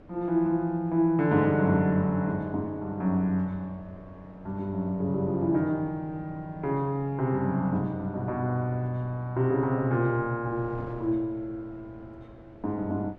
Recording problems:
wind noise; below 480 Hz, SNR 23 dB

